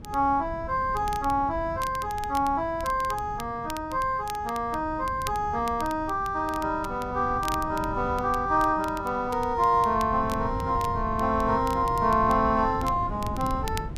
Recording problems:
wind on the microphone; below 180 Hz, SNR 12 dB
crackle; vinyl, SNR 20 dB

